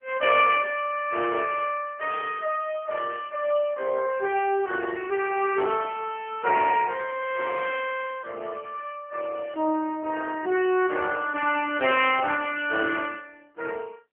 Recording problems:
phone line; 280 Hz to 3.1 kHz, AMR-NB

